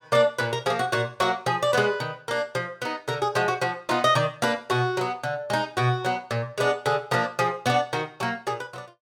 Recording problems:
none

